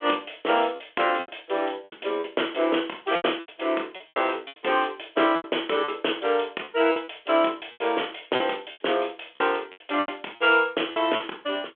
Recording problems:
telephone audio; 280 Hz to 3.4 kHz, G.726
packet loss; 12% of the sound replaced, filled with repeated pitch periods

